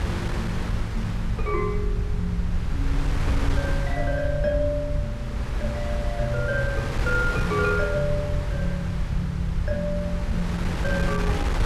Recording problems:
low-frequency rumble; below 72 Hz, SNR 3 dB
wind noise; below 520 Hz, SNR 4 dB

